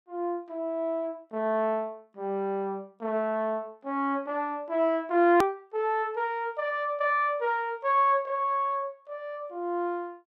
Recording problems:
hard cut with a click; at 5.5 s

